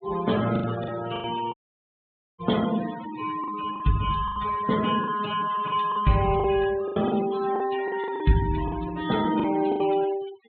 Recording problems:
low-pass filter; nothing above 4 kHz
noise reduction artefacts; signal-to-artefact ratio 13 dB
packet loss; 10% of the sound replaced, filled with the last packet
audio cutting out; at 1.5 s for 1 s

